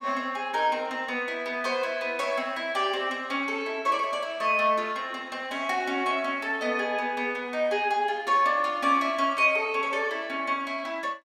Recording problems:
none

